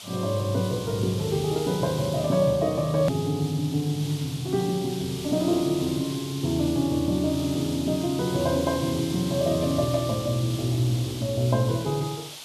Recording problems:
background hiss; SNR 12 dB
edit click; at 3 s

